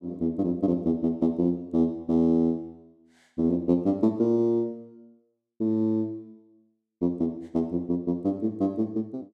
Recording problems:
none

